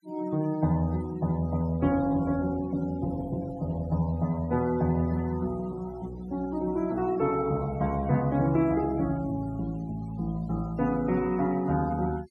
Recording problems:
noise reduction artefacts; signal-to-artefact ratio 22 dB

